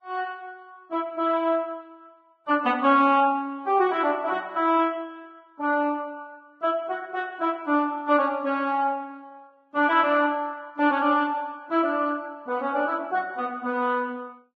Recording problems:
codec artefacts; Vorbis, log-spectral distance 2 dB

